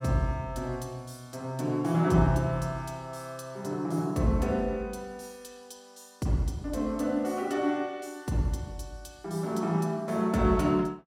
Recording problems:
none

